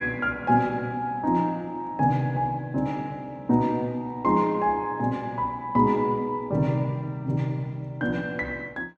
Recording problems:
none

